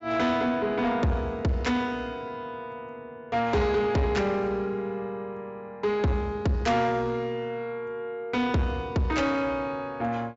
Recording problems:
treble cut off; nothing above 8 kHz
distorted audio; soft clipping, signal-to-distortion ratio 11 dB

